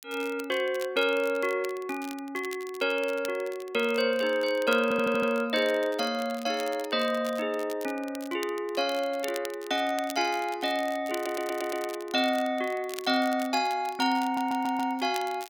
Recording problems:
crackle; vinyl, SNR 17 dB
stutter; at 5 s, at 11 s and at 14 s

